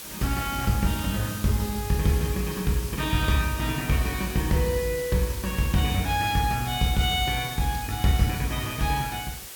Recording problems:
background hiss; slope 0 dB per octave, SNR 11 dB

